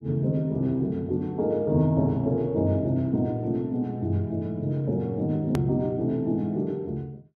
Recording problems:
hard cut with a click; at 5.5 s

